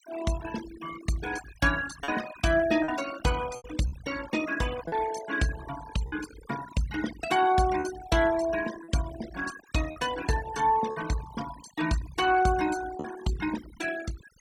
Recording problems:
noise reduction artefacts; signal-to-artefact ratio 12 dB
packet loss; 3% of the sound replaced, filled with repeated pitch periods

